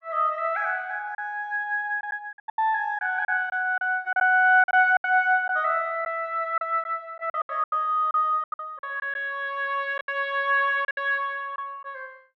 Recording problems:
lost packets; 10% of the sound replaced, filled with silence

